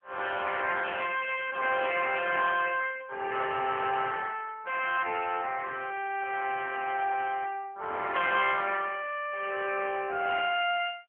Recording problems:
phone line; 370 Hz to 3.4 kHz, AMR-NB

